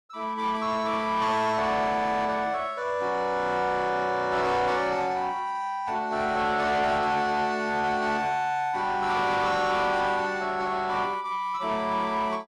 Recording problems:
distortion; soft clipping, signal-to-distortion ratio 9 dB

